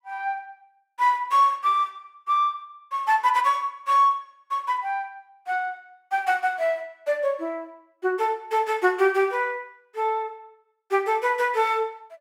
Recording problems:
none

